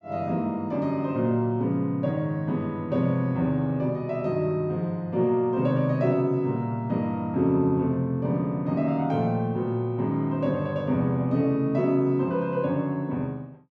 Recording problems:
none

